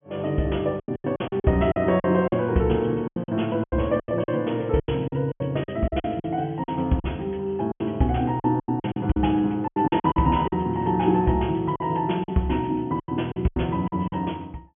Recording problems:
treble cut off; nothing above 3.3 kHz
lost packets; 14% of the sound replaced, filled with silence

